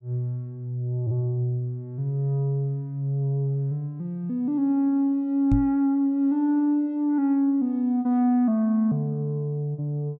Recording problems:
microphone thump; at 5.5 s; peak +4 dB vs average level

